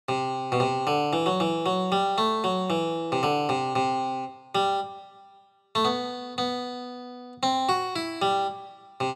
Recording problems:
none

